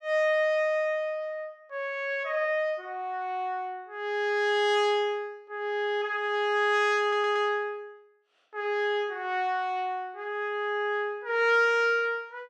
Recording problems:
audio stuttering; at 7 s

